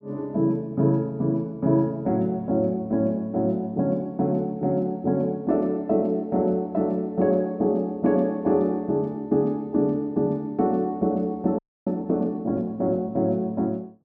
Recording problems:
audio freezing; at 12 s

